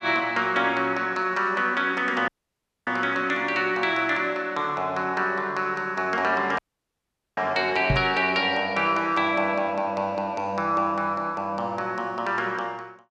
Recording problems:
audio cutting out; at 2.5 s for 0.5 s and at 6.5 s for 1 s
microphone thump; at 8 s; peak +4 dB vs average level

